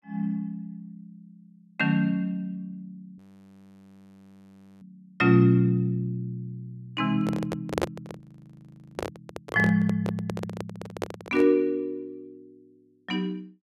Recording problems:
frozen audio; at 3 s for 1.5 s and at 8 s for 1 s
microphone handling noise; from 7 to 11 s; peak +3 dB vs average level

